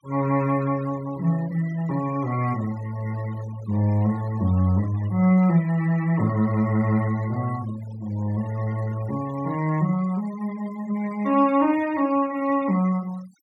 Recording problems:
denoising artefacts; signal-to-artefact ratio 21 dB

